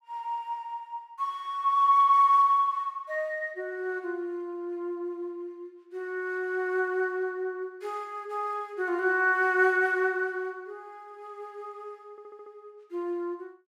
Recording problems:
stutter; at 12 s

